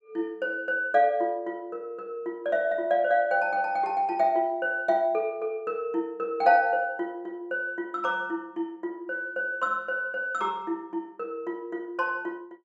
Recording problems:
none

